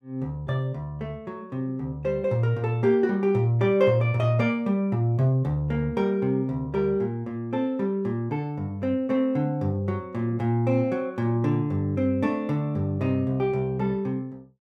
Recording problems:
none

